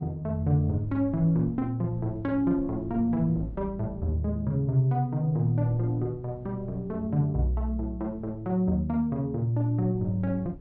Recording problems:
wind on the microphone; below 150 Hz, SNR 19 dB

